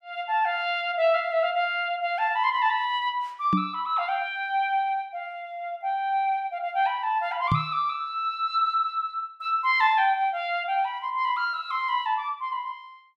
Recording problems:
microphone thump; at 3.5 s and at 7.5 s; peak +4 dB vs average level

